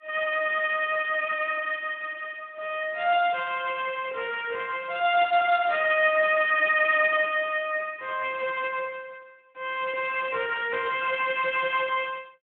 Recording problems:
telephone audio; 300 Hz to 3.4 kHz, Speex

